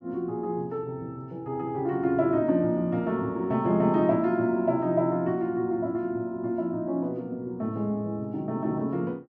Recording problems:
none

